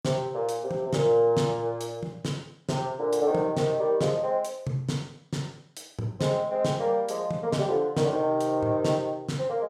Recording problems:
none

